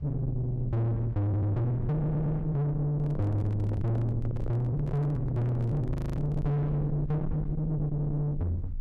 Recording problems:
distortion; soft clipping, signal-to-distortion ratio 5 dB
rumble; below 160 Hz, SNR 7 dB
stutter; at 1.5 s and at 2 s
handling noise; from 3 to 6.5 s; peak -6 dB vs average level
frozen audio; at 6 s

